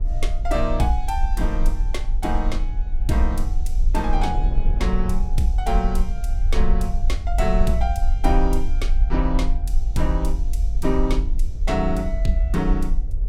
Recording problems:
low-frequency rumble; below 44 Hz, strongest tone 20 Hz, SNR -1 dB
wind noise; below 210 Hz, SNR 13 dB

